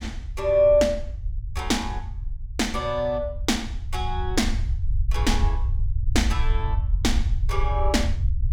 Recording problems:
rumble; below 74 Hz, SNR 3 dB

